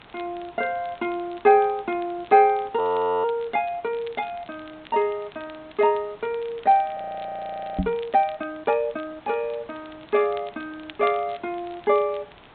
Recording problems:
low-pass filter; nothing above 4 kHz
hiss; SNR 25 dB
crackling; vinyl, SNR 26 dB
audio freezing; at 3 s and at 7 s for 1 s
microphone thump; at 8 s; peak +3 dB vs average level

